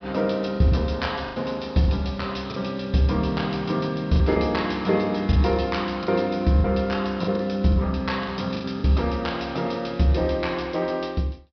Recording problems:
low-pass filter; nothing above 5.5 kHz
packet loss; 6% of the sound replaced, filled with the last packet

